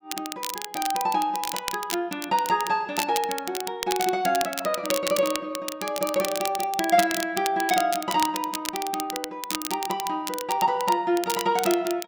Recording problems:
crackle; vinyl, SNR 7 dB

